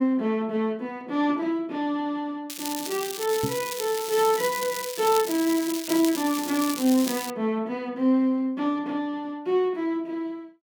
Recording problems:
crackling; from 2.5 to 7.5 s; loose cable, SNR 7 dB
microphone bump; at 3.5 s; peak 0 dB vs average level

